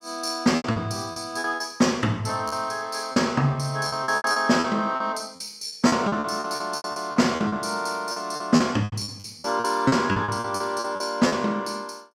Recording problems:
lost packets; 15% of the sound replaced, filled with repeated pitch periods

